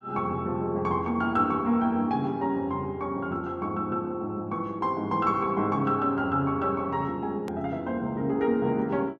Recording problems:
click at an edit; at 7.5 s

